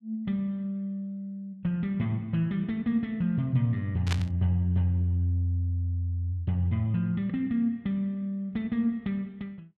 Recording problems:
static burst; at 4 s; peak 0 dB vs average level

